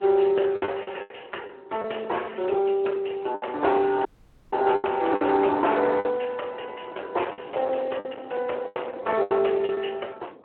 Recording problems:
telephone audio; 320 Hz to 3.2 kHz, Speex
distorted audio; hard clipping, signal-to-distortion ratio 15 dB
wind noise; below 860 Hz, SNR 17 dB
lost packets; 9% of the sound replaced, filled with the last packet
dropout; at 4 s

